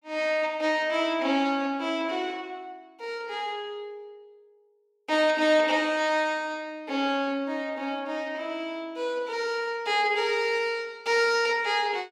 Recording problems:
none

